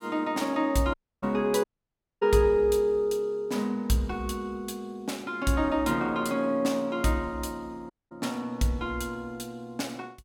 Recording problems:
dropout; at 1 s, at 1.5 s for 0.5 s and at 8 s

